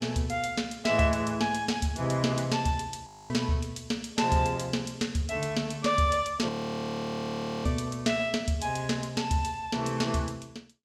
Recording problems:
audio freezing; at 3 s and at 6.5 s for 1 s

